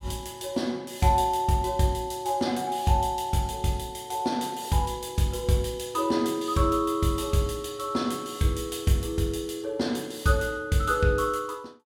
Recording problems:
none

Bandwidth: 16.5 kHz